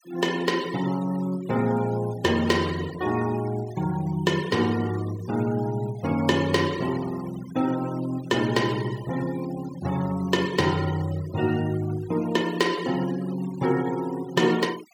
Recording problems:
noise reduction artefacts; signal-to-artefact ratio 16 dB

